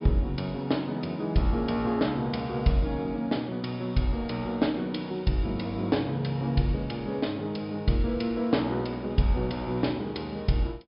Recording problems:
treble cut off; nothing above 5.5 kHz

